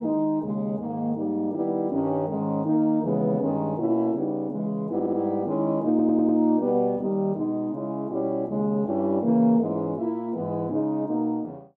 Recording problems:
audio stuttering; at 5 s and at 6 s

